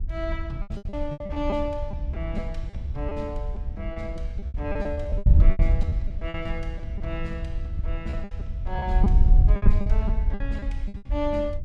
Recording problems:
wind on the microphone; below 66 Hz, SNR -6 dB
packet loss; 15% of the sound replaced, filled with repeated pitch periods

